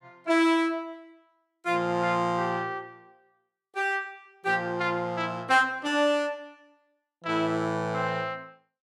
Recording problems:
none

